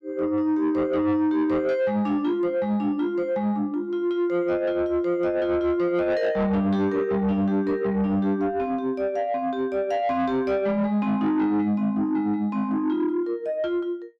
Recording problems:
distorted audio; soft clipping, signal-to-distortion ratio 10 dB

